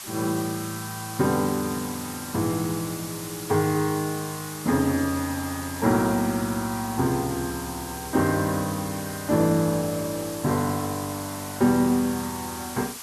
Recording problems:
background hiss; SNR 10 dB

